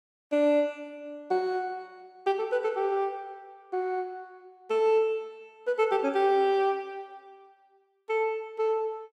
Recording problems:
none

